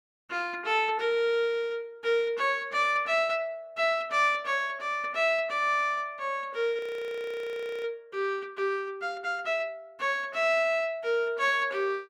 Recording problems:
frozen audio; at 7 s for 1 s

